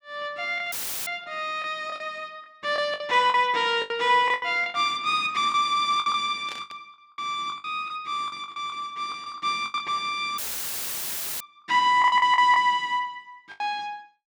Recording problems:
lost packets; 12% of the sound replaced, filled with the last packet
dropout; at 0.5 s and at 10 s for 1 s; filled with static
static burst; at 6.5 s; peak -10 dB vs average level

